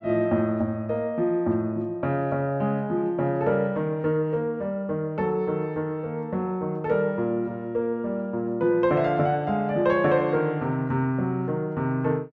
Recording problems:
none

